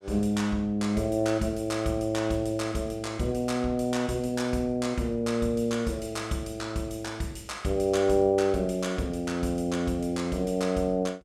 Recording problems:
none

